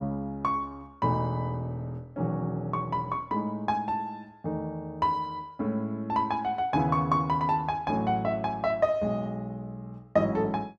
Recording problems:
none

